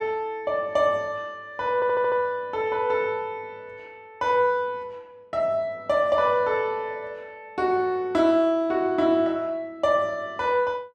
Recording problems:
audio stuttering; at 2 s

